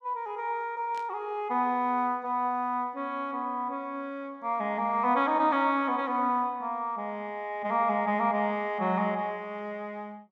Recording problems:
burst of static; at 1 s; peak -15 dB vs average level

